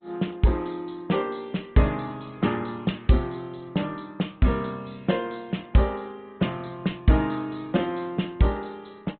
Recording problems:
treble missing; nothing above 3.9 kHz
codec artefacts; Opus, log-spectral distance 4 dB

